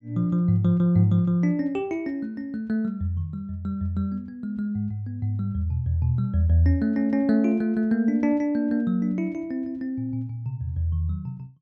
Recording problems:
none

